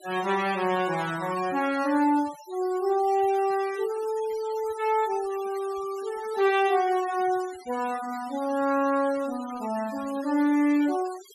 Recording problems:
denoising artefacts; signal-to-artefact ratio 18 dB

